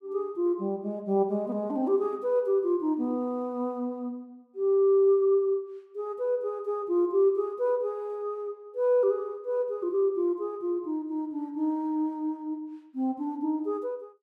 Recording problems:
none

